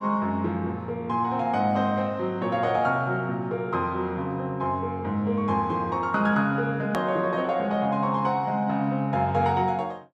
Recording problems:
hard cut with a click; at 7 s

